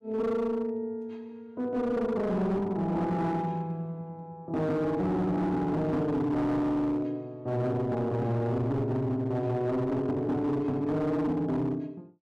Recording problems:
distorted audio; hard clipping, signal-to-distortion ratio 10 dB

